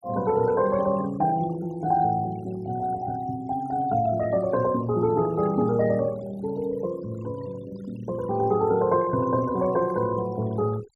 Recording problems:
noise reduction artefacts; signal-to-artefact ratio 20 dB

